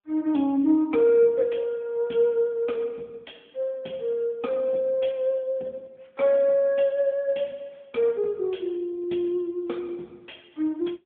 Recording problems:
phone line; 170 Hz to 3.6 kHz, AMR-NB

